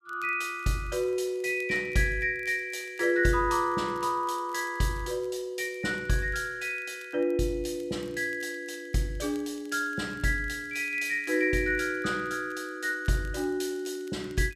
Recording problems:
crackle; vinyl, SNR 30 dB

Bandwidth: 14.5 kHz